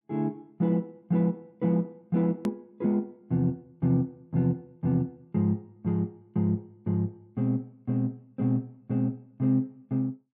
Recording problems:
hard cut with a click; at 2.5 s

